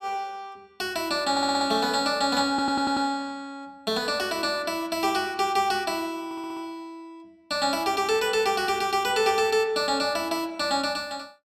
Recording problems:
audio stuttering; at 1.5 s, at 2.5 s and at 6.5 s

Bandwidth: 16.5 kHz